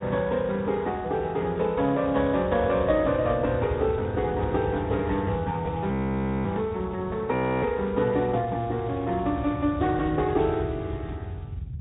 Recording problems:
treble cut off; nothing above 3.8 kHz
lossy compression; Speex, log-spectral distance 3 dB
low-frequency rumble; below 130 Hz, SNR 11 dB
audio freezing; at 6 s for 0.5 s and at 7.5 s

